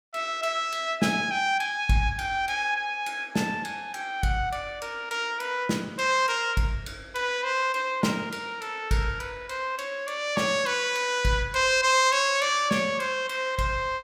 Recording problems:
none

